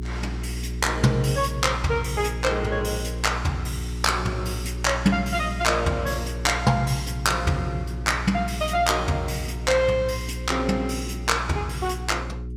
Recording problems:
hum; 60 Hz, harmonics up to 420 Hz, SNR 7 dB

